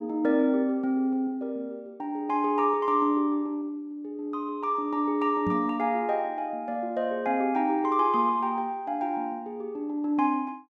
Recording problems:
microphone thump; at 5.5 s; peak -1 dB vs average level

